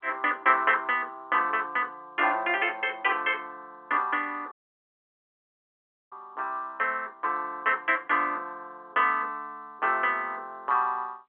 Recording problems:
telephone audio; 260 Hz to 3.4 kHz, G.711
audio cutting out; at 4.5 s for 1.5 s

